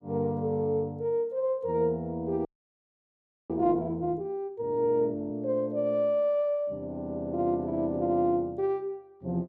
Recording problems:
frozen audio; at 2.5 s for 1 s

